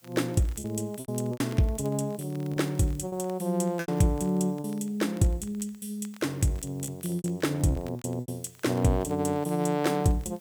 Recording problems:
background hiss; slope 0 dB per octave, SNR 29 dB
crackling; vinyl, SNR 27 dB
packet loss; 7% of the sound replaced, filled with repeated pitch periods

